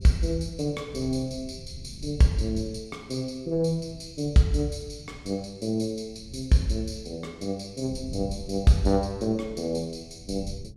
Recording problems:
wind noise; below 130 Hz, SNR 16 dB

